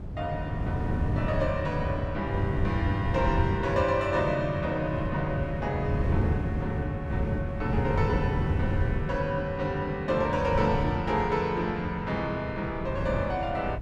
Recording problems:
wind on the microphone; below 180 Hz, SNR 2 dB

